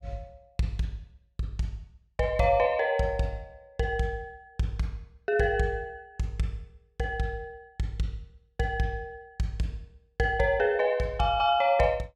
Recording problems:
none

